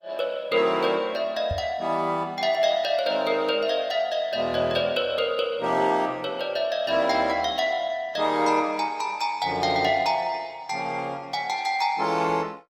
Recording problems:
lossy compression; Opus, log-spectral distance 3 dB, nothing above 18.9 kHz
knock on the microphone; at 1.5 s; peak -3 dB vs average level

